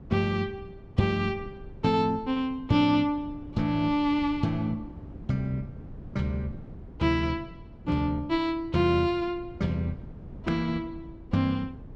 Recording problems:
wind noise; below 210 Hz, SNR 17 dB

